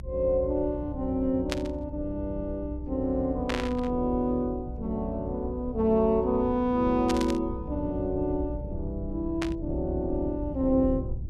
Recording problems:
low-frequency rumble; below 100 Hz, strongest tone 62 Hz, SNR 10 dB
static burst; 4 times, first at 1.5 s; peak +1 dB vs average level

